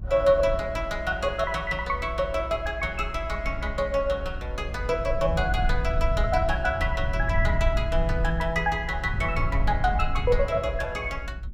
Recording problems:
low-frequency rumble; below 74 Hz, SNR 5 dB

